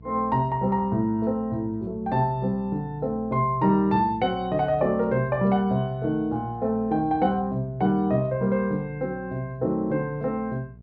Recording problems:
hum; 60 Hz, harmonics up to 480 Hz, SNR 20 dB

